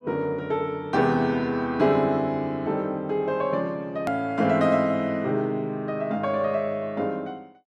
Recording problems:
edit click; at 4 s

